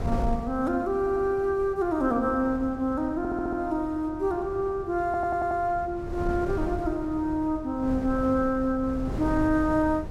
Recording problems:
wind noise; below 230 Hz, SNR 11 dB
audio stuttering; at 1 s, at 3 s and at 5 s

